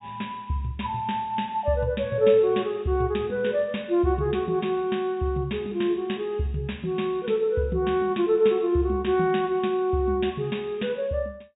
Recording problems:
treble cut off; nothing above 3.8 kHz

